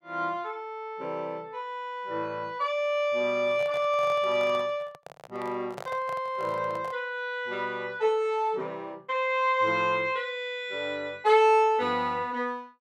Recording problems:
handling noise; from 3.5 to 7 s; peak -8 dB vs average level

